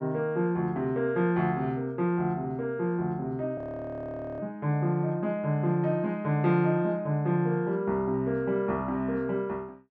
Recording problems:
audio freezing; at 3.5 s for 1 s

